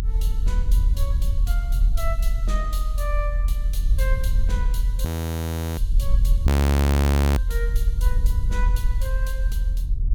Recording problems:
low-frequency rumble; below 72 Hz, strongest tone 40 Hz, SNR -12 dB
frozen audio; at 5 s for 0.5 s and at 6.5 s for 1 s

